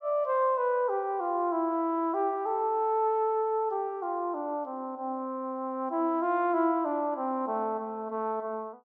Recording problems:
none

